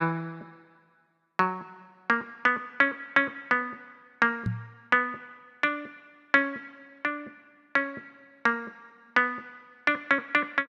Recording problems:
microphone thump; at 4.5 s; peak +1 dB vs average level

